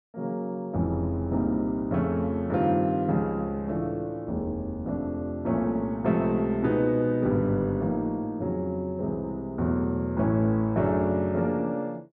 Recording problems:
none

